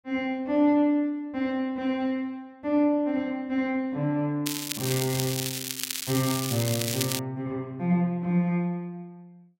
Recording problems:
crackle; from 4.5 to 7 s; loose cable, SNR 3 dB

